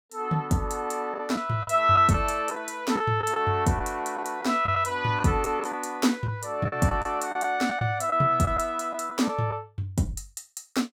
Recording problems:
lost packets; 6% of the sound replaced, filled with the last packet

